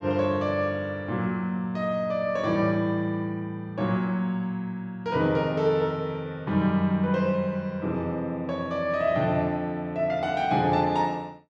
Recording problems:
none

